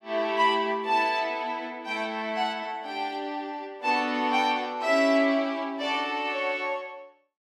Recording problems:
none

